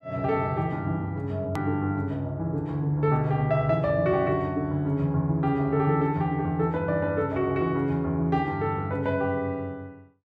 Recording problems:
edit click; at 1.5 s

